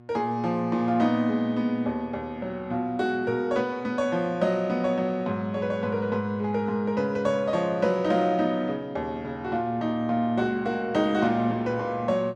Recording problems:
hum; 60 Hz, harmonics up to 1.4 kHz, SNR 24 dB

